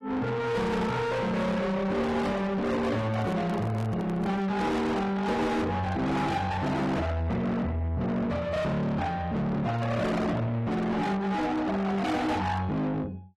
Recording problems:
codec artefacts; AAC, log-spectral distance 2 dB, nothing above 13.1 kHz
distorted audio; soft clipping, signal-to-distortion ratio 6 dB
microphone handling noise; from 3 to 4.5 s; peak -3 dB vs average level

